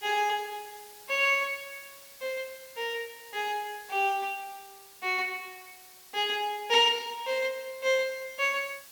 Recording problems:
hiss; slope +1 dB per octave, SNR 20 dB

